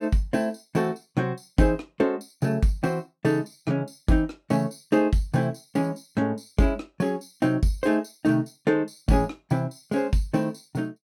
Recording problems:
none

